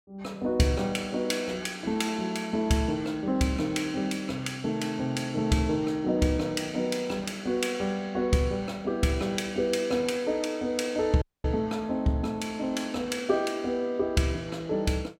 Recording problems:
dropout; at 11 s

